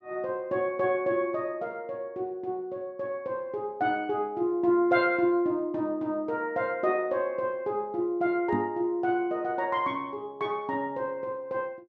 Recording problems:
microphone thump; at 8.5 s; peak +1 dB vs average level

